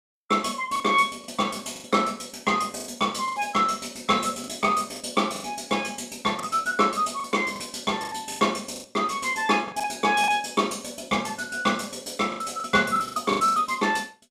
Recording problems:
lost packets; 10% of the sound replaced, filled with the last packet

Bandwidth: 15 kHz